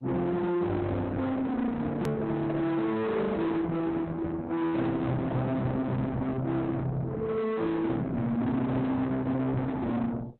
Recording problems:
lossy compression; Opus, log-spectral distance 2 dB, nothing above 13.1 kHz
distortion; soft clipping, signal-to-distortion ratio 6 dB
hard cut with a click; at 2 s

